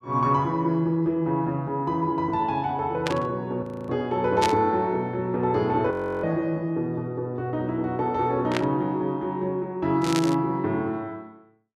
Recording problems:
burst of static; 4 times, first at 3 s; peak +1 dB vs average level
frozen audio; at 3.5 s and at 6 s

